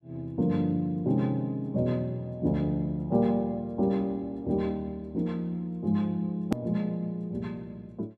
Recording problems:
hard cut with a click; at 6.5 s

